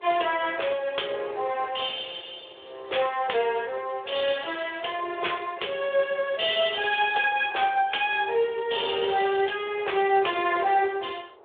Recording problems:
telephone audio; 320 Hz to 3.6 kHz, Speex
wind noise; below 790 Hz, SNR 23 dB

